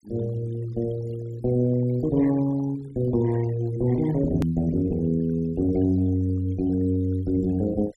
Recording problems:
denoising artefacts; signal-to-artefact ratio 22 dB
hard cut with a click; at 4.5 s

